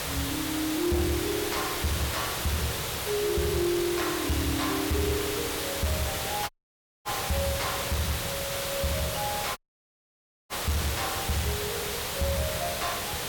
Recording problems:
distortion; soft clipping, signal-to-distortion ratio 10 dB
hiss; slope -3 dB per octave, SNR 2 dB
dropout; at 6.5 s for 0.5 s and at 9.5 s for 1 s

